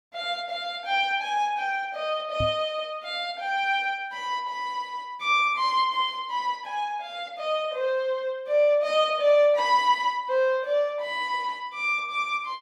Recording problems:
knock on the microphone; at 2.5 s; peak -2 dB vs average level

